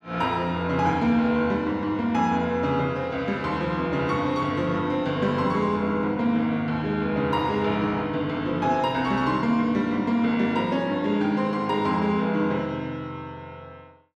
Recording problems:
none

